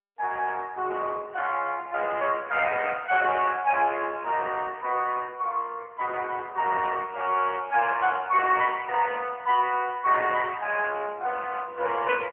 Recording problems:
phone line; 370 Hz to 3.3 kHz, AMR-NB

